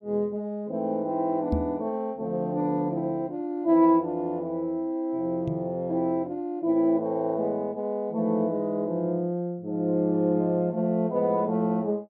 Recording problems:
knock on the microphone; at 1.5 s and at 5.5 s; peak +2 dB vs average level

